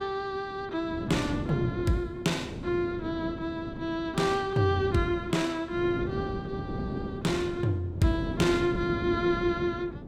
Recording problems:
wind noise; below 330 Hz, SNR 7 dB

